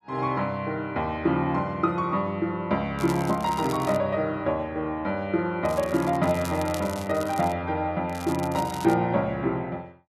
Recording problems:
crackle; at 3 s, from 5.5 to 7.5 s and at 8 s; loose cable, SNR 16 dB

